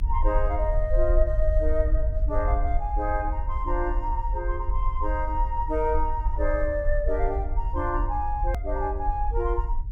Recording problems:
rumble; below 52 Hz, SNR 0 dB
edit click; at 8.5 s

